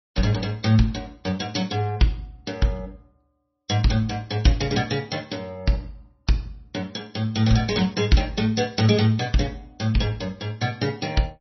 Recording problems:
codec artefacts; MP3, log-spectral distance 4 dB, nothing above 5.8 kHz

